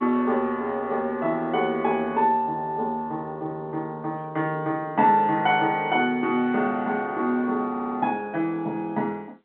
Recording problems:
phone line; 190 Hz to 3.6 kHz, G.711
stutter; at 7.5 s

